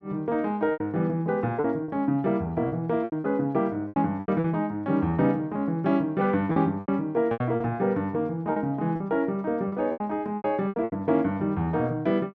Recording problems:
packet loss; 10% of the sound replaced, filled with repeated pitch periods

